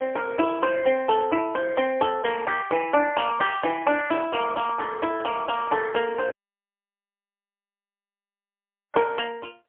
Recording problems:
telephone audio; 260 Hz to 3.3 kHz, AMR-NB, then MP3
microphone handling noise; from 3 to 6.5 s; peak -12 dB vs average level
dropout; at 6.5 s for 2.5 s

